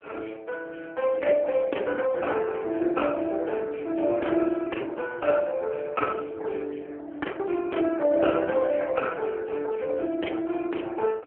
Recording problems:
phone line; 220 Hz to 3.2 kHz, AMR-NB

